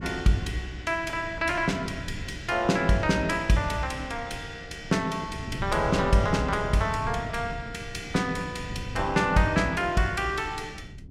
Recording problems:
wind on the microphone; below 170 Hz, SNR 12 dB

